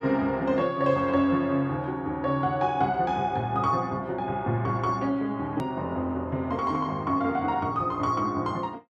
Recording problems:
hard cut with a click; at 5.5 s

